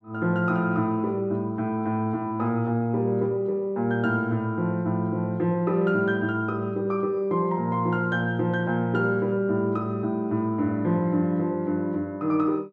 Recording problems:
none

